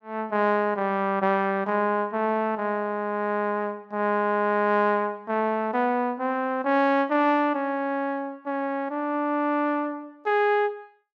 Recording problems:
none

